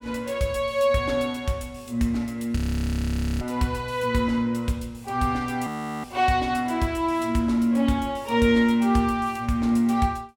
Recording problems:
audio freezing; at 2.5 s for 1 s and at 5.5 s

